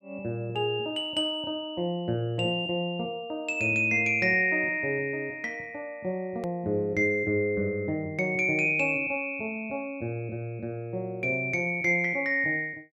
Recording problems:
edit click; at 6.5 s

